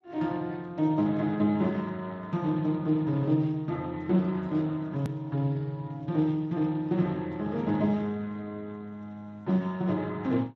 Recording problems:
lossy compression; Speex, log-spectral distance 2 dB, nothing above 13.1 kHz
click at an edit; at 5 s

